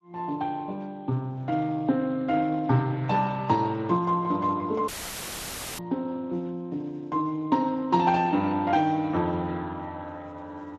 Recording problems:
lossy compression; Speex, log-spectral distance 2 dB
audio cutting out; at 5 s for 1 s; filled with static

